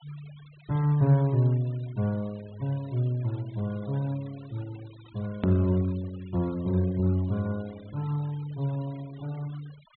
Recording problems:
treble missing; nothing above 4.1 kHz
noise reduction artefacts; signal-to-artefact ratio 24 dB
edit click; at 5.5 s

